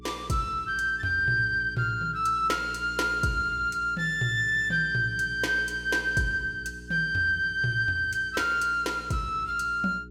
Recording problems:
electrical hum; 60 Hz, harmonics up to 420 Hz, SNR 19 dB

